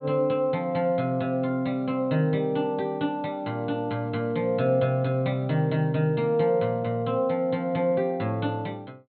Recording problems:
treble missing; nothing above 4.2 kHz

